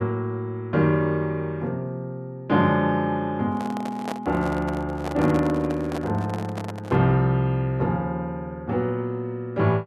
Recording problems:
microphone handling noise; from 3.5 to 7 s; peak -3 dB vs average level

